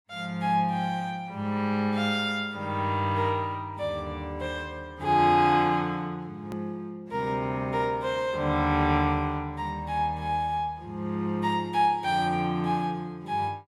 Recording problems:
hard cut with a click; at 6.5 s

